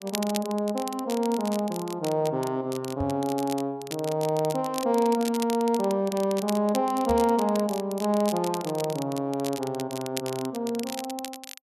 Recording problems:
crackle; vinyl, SNR 13 dB
microphone bump; at 3 s and at 7 s; peak -2 dB vs average level

